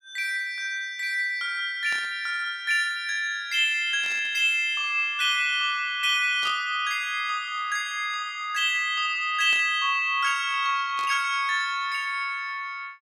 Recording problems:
static burst; 5 times, first at 2 s; peak -10 dB vs average level

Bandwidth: 15.5 kHz